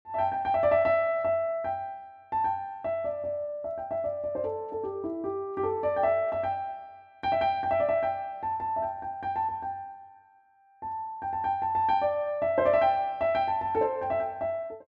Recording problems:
none

